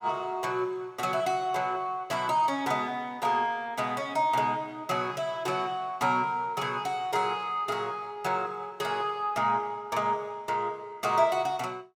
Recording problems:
none

